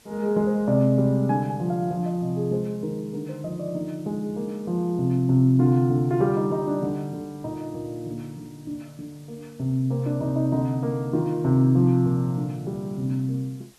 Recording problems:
hiss; slope -1 dB per octave, SNR 30 dB

